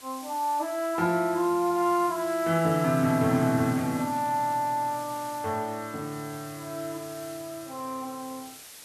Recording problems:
hiss; slope 0 dB per octave, SNR 16 dB

